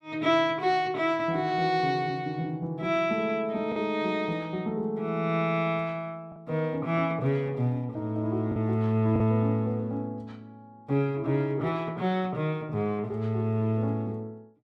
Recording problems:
lost packets; 1.1% of the sound replaced, filled with the last packet

